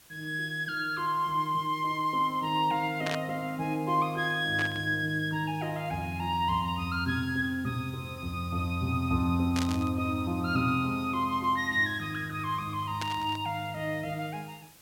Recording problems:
hiss; slope -1 dB per octave, SNR 24 dB
static burst; 4 times, first at 3 s; peak -1 dB vs average level

